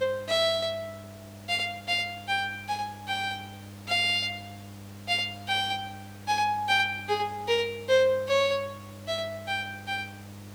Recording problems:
hum; 50 Hz, harmonics up to 800 Hz, SNR 19 dB
background hiss; slope -4 dB per octave, SNR 23 dB

